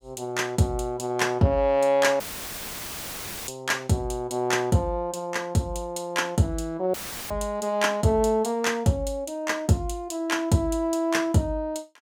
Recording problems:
audio cutting out; at 2 s for 1.5 s and at 7 s; filled with static

